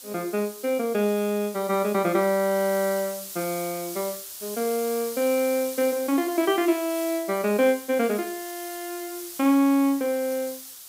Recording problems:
hiss; SNR 12 dB

